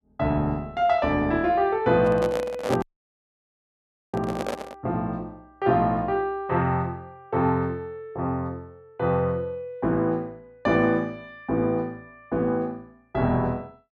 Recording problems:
microphone handling noise; from 2 to 5 s; peak +3 dB vs average level
dropout; at 3 s for 1.5 s

